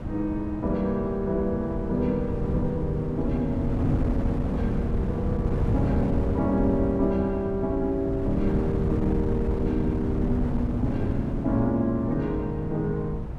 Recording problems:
wind on the microphone; below 190 Hz, SNR 3 dB

